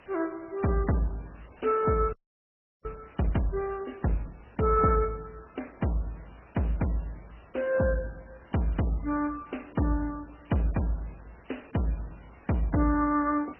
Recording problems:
codec artefacts; MP3, then MP2, log-spectral distance 11 dB, nothing above 2.9 kHz
background hiss; SNR 25 dB
audio freezing; at 2 s for 0.5 s

